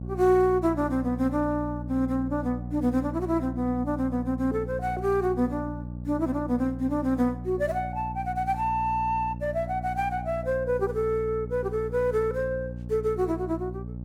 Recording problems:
hum; 60 Hz, harmonics up to 600 Hz, SNR 9 dB

